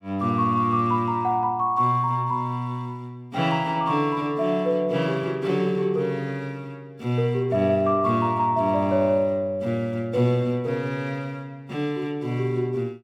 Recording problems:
none

